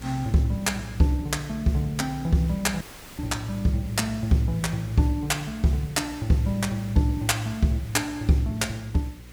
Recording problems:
hum; 60 Hz, harmonics up to 600 Hz, SNR 17 dB
hiss; SNR 22 dB
dropout; at 3 s

